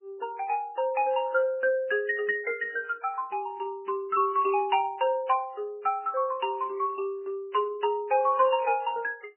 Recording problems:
lossy compression; MP3, log-spectral distance 2 dB, nothing above 2.5 kHz

